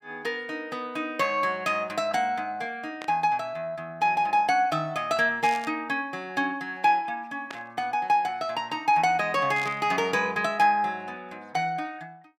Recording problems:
burst of static; 4 times, first at 3 s; peak -8 dB vs average level

